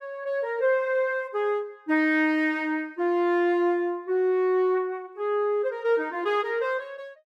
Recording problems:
none

